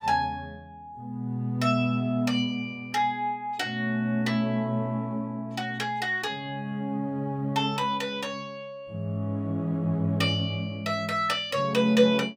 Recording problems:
none

